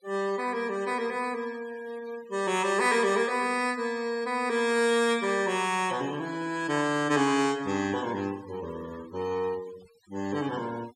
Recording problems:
noise reduction artefacts; signal-to-artefact ratio 19 dB

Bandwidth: 16 kHz